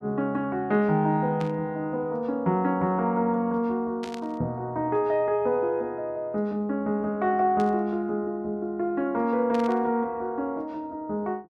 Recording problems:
static burst; 4 times, first at 1.5 s; peak -10 dB vs average level

